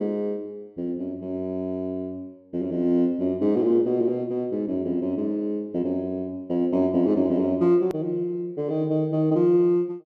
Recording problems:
edit click; at 8 s

